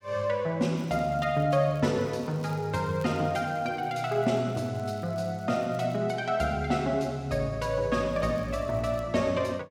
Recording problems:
crackle; from 1 to 6 s and at 8 s; loose cable, SNR 30 dB

